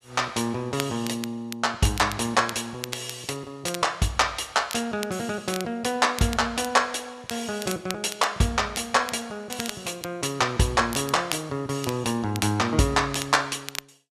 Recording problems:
crackle; vinyl, SNR 12 dB

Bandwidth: 14 kHz